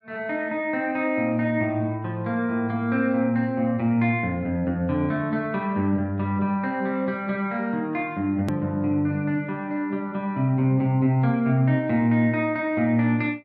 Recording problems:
edit click; at 8.5 s

